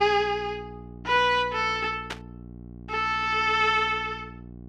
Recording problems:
electrical hum; 60 Hz, harmonics up to 780 Hz, SNR 19 dB
burst of static; at 2 s; peak -4 dB vs average level

